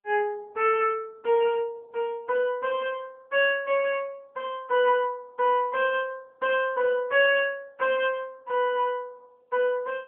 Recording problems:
telephone audio; 220 Hz to 3.3 kHz, AMR-NB

